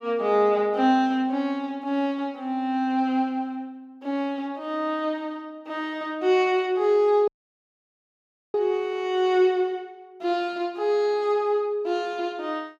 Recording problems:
dropout; at 7.5 s for 1.5 s

